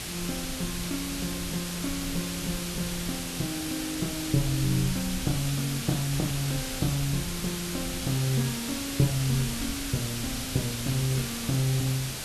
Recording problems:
hiss; slope 0 dB per octave, SNR 3 dB
low-frequency rumble; below 90 Hz, SNR 14 dB

